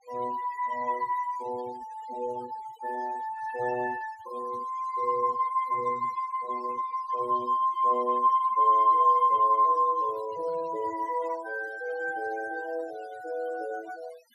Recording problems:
denoising artefacts; signal-to-artefact ratio 22 dB

